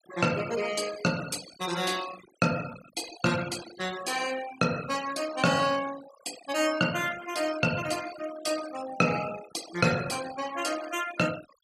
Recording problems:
denoising artefacts; signal-to-artefact ratio 12 dB

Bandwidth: 14.5 kHz